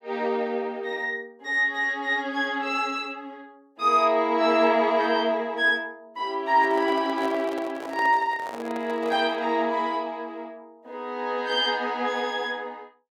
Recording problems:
handling noise; from 6.5 to 9.5 s; peak -7 dB vs average level

